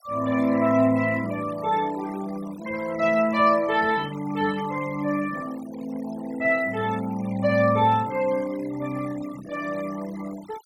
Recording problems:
denoising artefacts; signal-to-artefact ratio 18 dB

